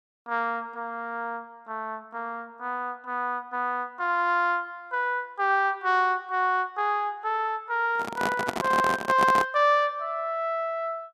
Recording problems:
handling noise; from 8 to 9.5 s; peak +2 dB vs average level

